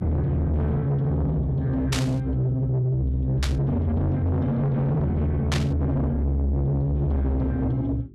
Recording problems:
distorted audio; soft clipping, signal-to-distortion ratio 7 dB
electrical hum; 50 Hz, harmonics up to 400 Hz, SNR 27 dB
static burst; at 2 s, at 3.5 s and at 5.5 s; peak 0 dB vs average level

